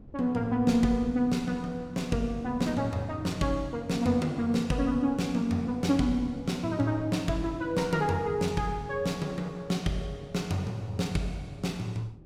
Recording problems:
wind on the microphone; below 280 Hz, SNR 19 dB

